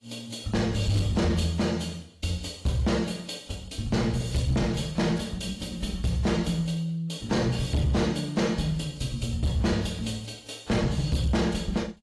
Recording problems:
lossy compression; AAC, log-spectral distance 3 dB, nothing above 11.6 kHz
distortion; hard clipping, signal-to-distortion ratio 10 dB

